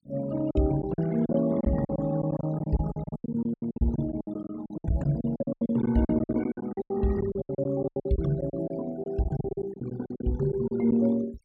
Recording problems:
noise reduction artefacts; signal-to-artefact ratio 19 dB
lost packets; 20% of the sound replaced, filled with silence

